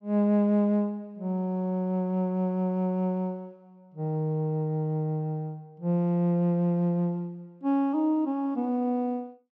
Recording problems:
none

